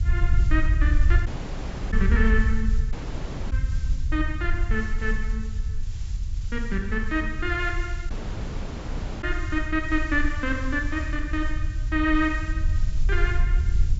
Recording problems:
low-pass filter; nothing above 8 kHz
hiss; slope +1 dB per octave, SNR 21 dB
low-frequency rumble; below 64 Hz, SNR -1 dB
dropout; at 1.5 s for 0.5 s, at 3 s for 0.5 s and at 8 s for 1 s

